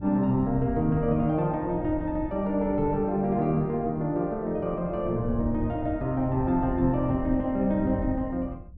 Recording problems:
wind noise; below 120 Hz, SNR 11 dB

